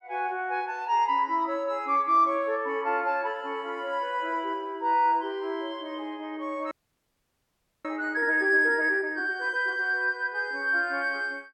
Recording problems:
audio freezing; at 6.5 s for 1 s

